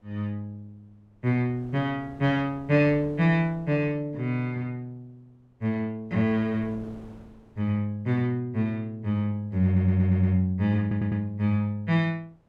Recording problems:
wind noise; below 480 Hz, SNR 24 dB
stutter; at 9.5 s and at 11 s

